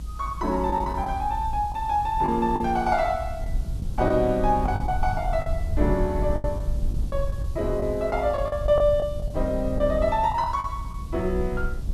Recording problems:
hiss; slope +5 dB per octave, SNR 27 dB
rumble; below 78 Hz, SNR 6 dB
packet loss; 8% of the sound replaced, filled with the last packet

